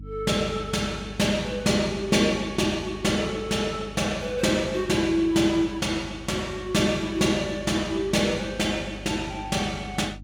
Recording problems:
hum; 50 Hz, harmonics up to 300 Hz, SNR 17 dB

